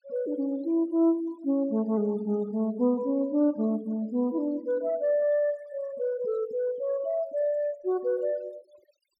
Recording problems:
denoising artefacts; signal-to-artefact ratio 27 dB

